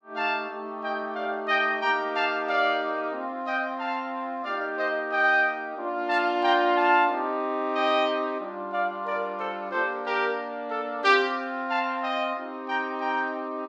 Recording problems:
none

